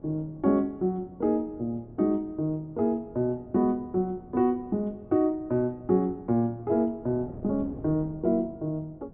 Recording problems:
low-pass filter; nothing above 4 kHz
wind on the microphone; below 340 Hz, SNR 20 dB

